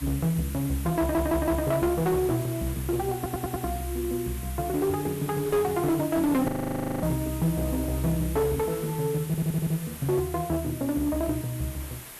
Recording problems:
distortion; hard clipping, uneven, signal-to-distortion ratio 11 dB
background hiss; SNR 13 dB
wind noise; below 1.7 kHz, SNR 24 dB
stutter; at 1 s, at 3 s and at 9.5 s
frozen audio; at 6.5 s for 0.5 s

